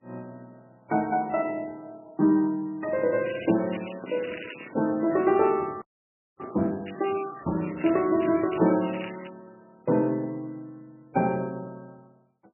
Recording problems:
lossy compression; MP3, log-spectral distance 8 dB, nothing above 2.4 kHz
microphone handling noise; from 3 to 7 s; peak -9 dB vs average level
crackling; from 3.5 to 5 s and from 7 to 9.5 s; loose cable, SNR 15 dB
frozen audio; at 6 s for 0.5 s

